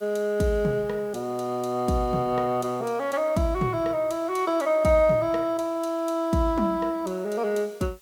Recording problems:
hiss; slope +1 dB per octave, SNR 30 dB

